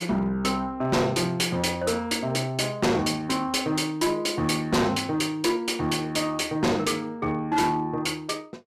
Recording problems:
distortion; hard clipping, uneven, signal-to-distortion ratio 7 dB

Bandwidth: 14.5 kHz